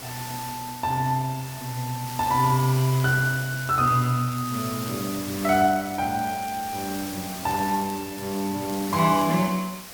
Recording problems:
background hiss; slope -1 dB per octave, SNR 11 dB
crackle; from 2 to 5 s, from 5.5 to 7 s and from 7.5 to 9 s; loose cable, SNR 20 dB

